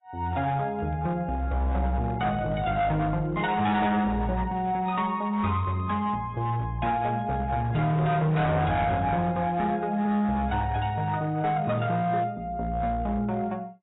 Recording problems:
codec artefacts; AAC, log-spectral distance 2 dB, nothing above 3.8 kHz
distortion; hard clipping, signal-to-distortion ratio 11 dB

